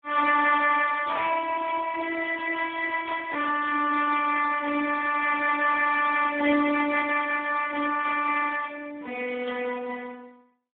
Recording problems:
phone line; 320 Hz to 3.2 kHz, Speex
static burst; 4 times, first at 1 s; peak -9 dB vs average level

